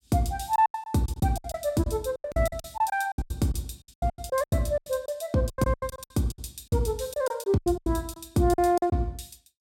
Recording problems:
packet loss; 20% of the sound replaced, filled with silence

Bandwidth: 16.5 kHz